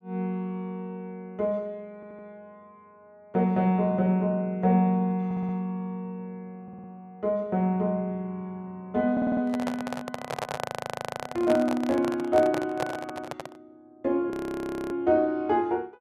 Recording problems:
audio stuttering; 4 times, first at 2 s
microphone handling noise; from 9.5 to 14 s; peak 0 dB vs average level
frozen audio; at 11 s for 0.5 s and at 14 s for 0.5 s

